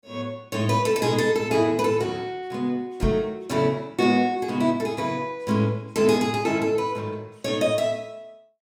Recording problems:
microphone bump; at 3 s; peak +2 dB vs average level

